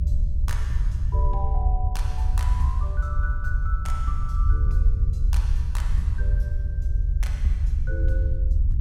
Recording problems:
rumble; below 68 Hz, SNR -12 dB

